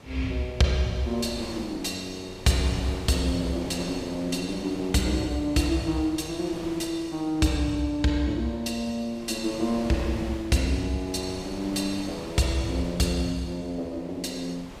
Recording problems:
wind noise; below 1.5 kHz, SNR 14 dB

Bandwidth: 15.5 kHz